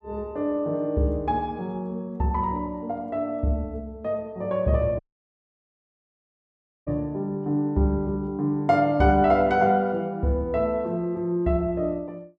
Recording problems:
dropout; at 5 s for 2 s

